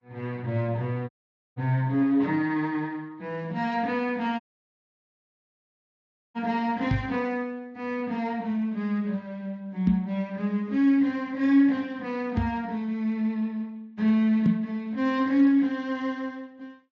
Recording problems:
codec artefacts; Vorbis, then Speex, log-spectral distance 2 dB
dropout; at 1 s and at 4.5 s for 2 s
microphone bump; 4 times, first at 7 s; peak +5 dB vs average level

